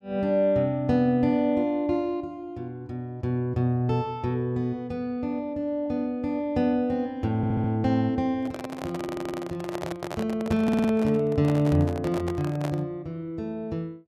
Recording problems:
audio stuttering; at 7.5 s, at 9 s and at 11 s
microphone handling noise; from 8.5 to 13 s; peak -3 dB vs average level

